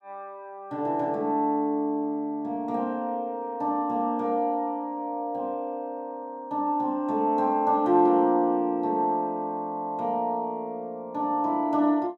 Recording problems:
none

